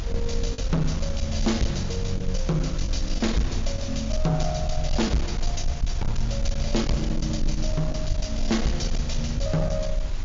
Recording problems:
treble missing; nothing above 7.2 kHz
distortion; soft clipping, signal-to-distortion ratio 11 dB
background hiss; slope -2 dB per octave, SNR 14 dB
low-frequency rumble; below 50 Hz, strongest tone 22 Hz, SNR 4 dB
packet loss; 3% of the sound replaced, filled with the last packet

